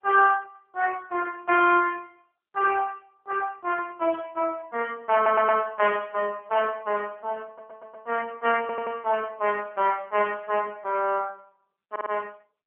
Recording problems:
phone line; 240 Hz to 3.2 kHz, AMR-NB
audio stuttering; 4 times, first at 5 s

